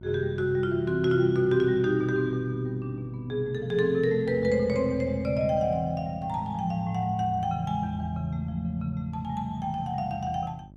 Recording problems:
hum; 50 Hz, harmonics up to 700 Hz, SNR 22 dB

